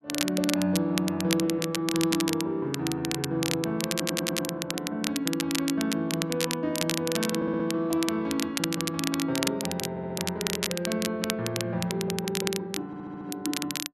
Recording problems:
crackling; vinyl, SNR 3 dB
audio stuttering; 4 times, first at 4 s

